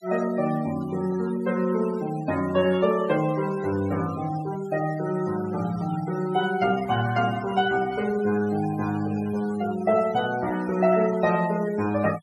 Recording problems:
noise reduction artefacts; signal-to-artefact ratio 16 dB

